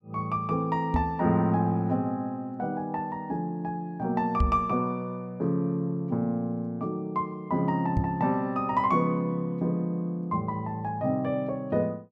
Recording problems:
microphone bump; at 1 s, at 4.5 s and at 8 s; peak +6 dB vs average level

